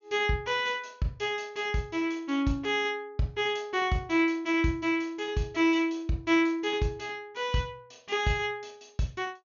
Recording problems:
treble cut off; nothing above 6.9 kHz

